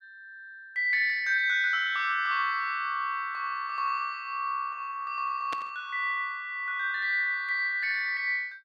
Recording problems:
burst of static; at 5.5 s; peak -6 dB vs average level

